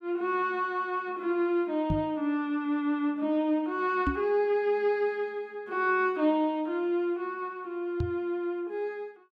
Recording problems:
microphone thump; at 2 s, at 4 s and at 8 s; peak +3 dB vs average level

